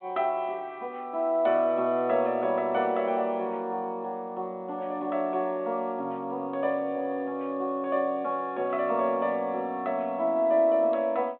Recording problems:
phone line; 190 Hz to 3.6 kHz, G.726

